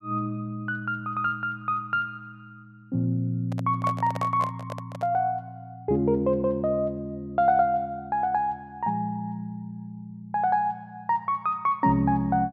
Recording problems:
handling noise; from 3.5 to 5 s; peak -3 dB vs average level

